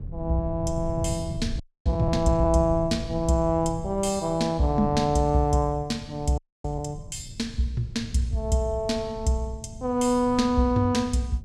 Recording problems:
wind noise; below 130 Hz, SNR 11 dB
audio freezing; at 1.5 s and at 6.5 s

